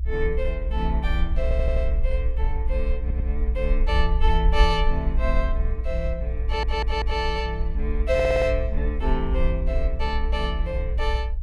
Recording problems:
low-frequency rumble; below 58 Hz, SNR -1 dB
audio stuttering; 4 times, first at 1.5 s

